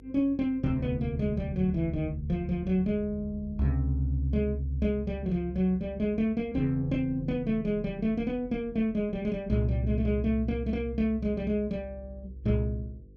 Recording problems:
electrical hum; 50 Hz, harmonics up to 500 Hz, SNR 24 dB

